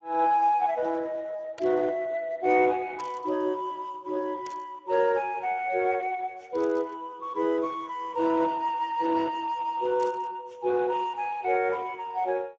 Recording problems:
lossy compression; Speex, log-spectral distance 3 dB
static burst; 5 times, first at 1.5 s; peak -12 dB vs average level

